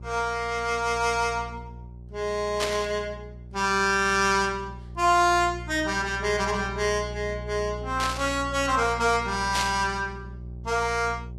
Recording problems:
codec artefacts; Vorbis, log-spectral distance 2 dB, nothing above 12.7 kHz
hum; 60 Hz, harmonics up to 420 Hz, SNR 14 dB
burst of static; at 2.5 s, at 8 s and at 9.5 s; peak +1 dB vs average level

